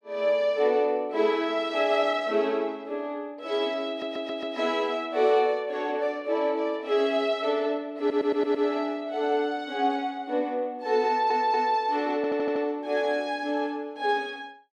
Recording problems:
audio stuttering; 4 times, first at 4 s

